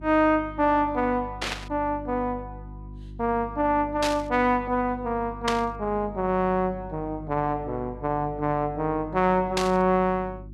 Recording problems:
electrical hum; 50 Hz, harmonics up to 350 Hz, SNR 16 dB
burst of static; 4 times, first at 1.5 s; peak +2 dB vs average level

